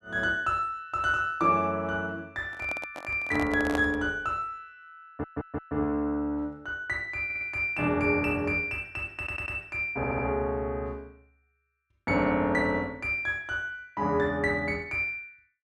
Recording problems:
handling noise; from 2.5 to 4 s; peak 0 dB vs average level
audio stuttering; 4 times, first at 5 s

